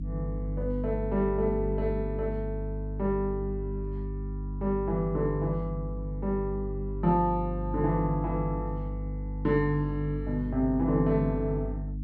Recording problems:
electrical hum; 50 Hz, harmonics up to 300 Hz, SNR 5 dB

